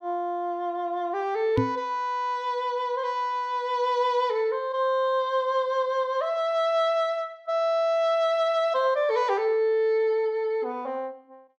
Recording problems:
microphone thump; at 1.5 s; peak +4 dB vs average level

